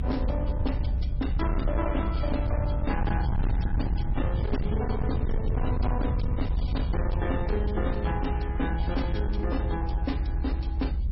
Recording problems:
lossy compression; MP3, log-spectral distance 2 dB, nothing above 5.5 kHz
distorted audio; hard clipping, signal-to-distortion ratio 8 dB
rumble; below 96 Hz, SNR -3 dB
wind noise; below 180 Hz, SNR 14 dB

